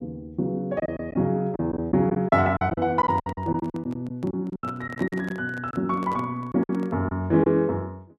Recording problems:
packet loss; 10% of the sound replaced, filled with silence
handling noise; from 3 to 7 s; peak -9 dB vs average level

